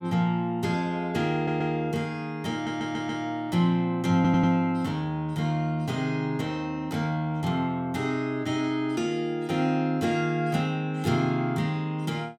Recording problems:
stutter; at 1.5 s, at 2.5 s and at 4 s

